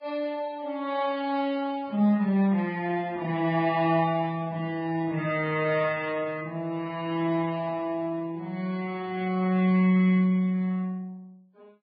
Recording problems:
lossy codec; Vorbis, then MP3, log-spectral distance 2 dB, nothing above 4.1 kHz

